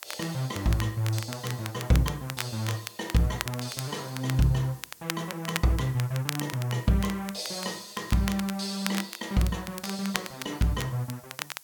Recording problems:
background hiss; slope +1 dB per octave, SNR 20 dB
crackle; vinyl, SNR 9 dB

